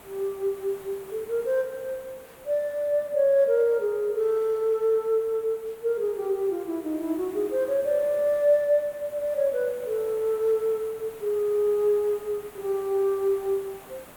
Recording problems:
background hiss; SNR 22 dB

